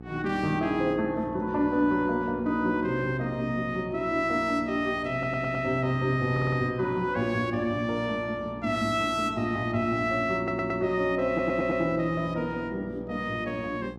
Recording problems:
hum; 60 Hz, harmonics up to 1.2 kHz, SNR 16 dB
stutter; 4 times, first at 5 s

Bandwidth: 14.5 kHz